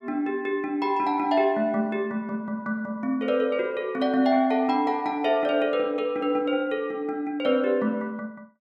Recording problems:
none

